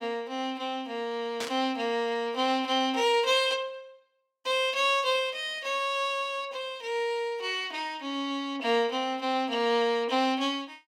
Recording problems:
static burst; at 1.5 s; peak -3 dB vs average level

